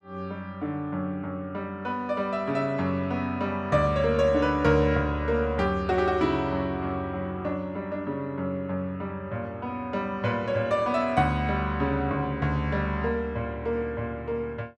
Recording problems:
none

